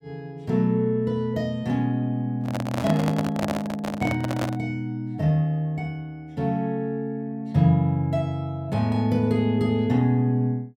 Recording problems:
handling noise; from 2.5 to 4.5 s; peak 0 dB vs average level

